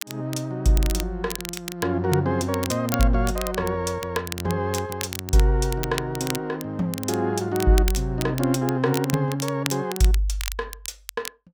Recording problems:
crackling; vinyl, SNR 11 dB

